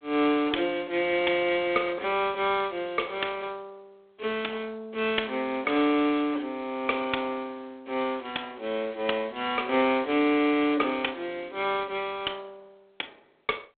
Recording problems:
telephone audio; 300 Hz to 3.5 kHz, G.726

